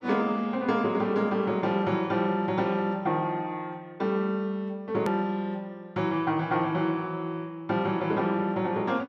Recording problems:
click at an edit; at 5 s

